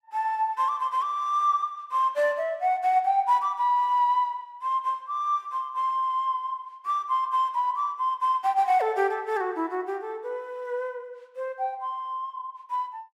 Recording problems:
none

